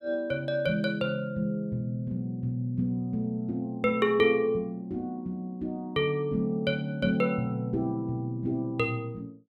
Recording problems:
none

